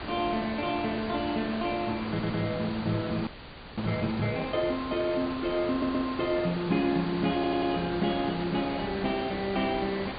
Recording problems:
treble missing; nothing above 4.7 kHz
background hiss; SNR 8 dB
stutter; at 2 s, at 5.5 s and at 7.5 s
audio freezing; at 3.5 s for 0.5 s

